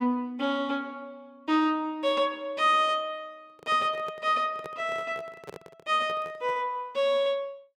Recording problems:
handling noise; from 3.5 to 6.5 s; peak -10 dB vs average level

